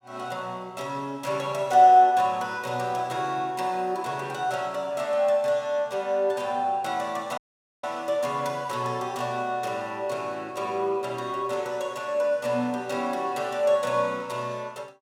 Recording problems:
dropout; at 7.5 s

